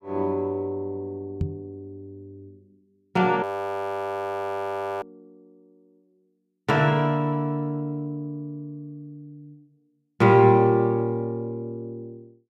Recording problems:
knock on the microphone; at 1.5 s; peak +1 dB vs average level
frozen audio; at 3.5 s for 1.5 s

